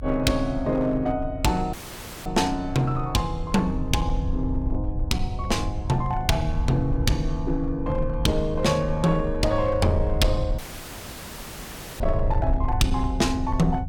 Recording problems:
distortion; hard clipping, uneven, signal-to-distortion ratio 12 dB
rumble; below 80 Hz, SNR 6 dB
dropout; at 1.5 s for 0.5 s and at 11 s for 1.5 s

